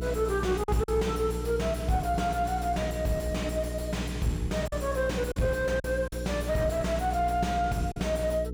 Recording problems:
distortion; soft clipping, signal-to-distortion ratio 4 dB
mains hum; 60 Hz, harmonics up to 480 Hz, SNR 6 dB
lost packets; 3% of the sound replaced, filled with silence

